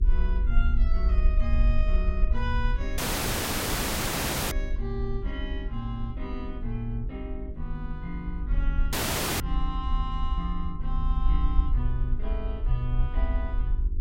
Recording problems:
hum; 50 Hz, harmonics up to 400 Hz, SNR 8 dB
rumble; below 52 Hz, SNR -6 dB
dropout; at 3 s for 1.5 s and at 9 s

